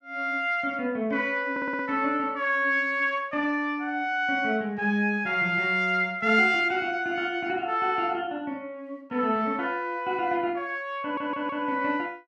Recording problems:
audio stuttering; at 1.5 s and at 11 s

